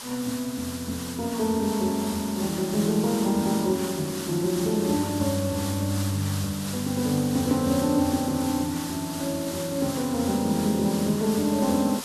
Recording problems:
hiss; SNR 9 dB

